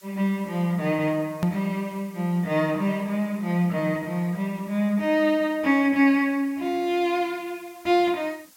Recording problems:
background hiss; slope +2 dB per octave, SNR 27 dB
click at an edit; at 1.5 s

